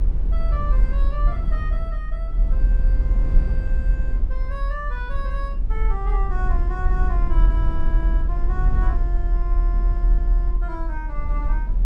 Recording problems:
low-frequency rumble; below 44 Hz, strongest tone 40 Hz, SNR -12 dB

